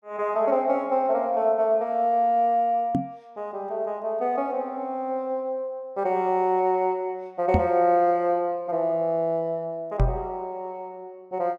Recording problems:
microphone bump; at 3 s, at 7.5 s and at 10 s; peak +5 dB vs average level

